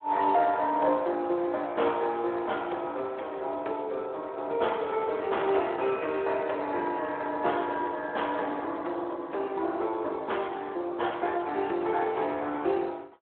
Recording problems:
telephone audio; 300 Hz to 3.5 kHz, Speex

